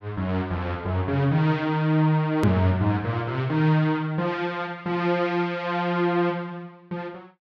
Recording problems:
edit click; at 2.5 s

